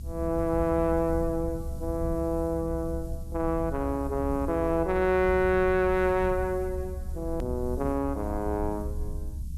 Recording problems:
background hiss; SNR 28 dB
low-frequency rumble; below 76 Hz, SNR 9 dB
click at an edit; at 7.5 s

